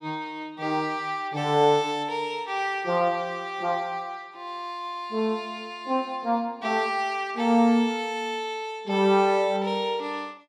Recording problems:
none

